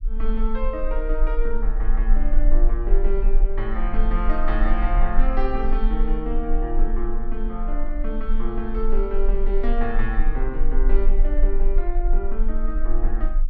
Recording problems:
low-frequency rumble; below 32 Hz, strongest tone 18 Hz, SNR -4 dB

